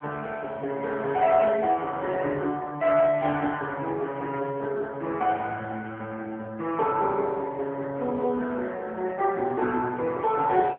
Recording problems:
telephone audio; 170 Hz to 3.3 kHz, AMR-NB

